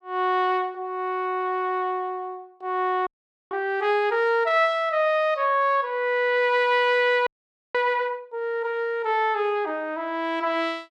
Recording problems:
audio freezing; at 3 s and at 7.5 s

